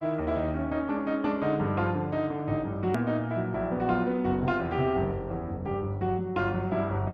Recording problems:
lossy codec; Opus, then Opus, log-spectral distance 2 dB, nothing above 13.1 kHz
hard cut with a click; at 3 s

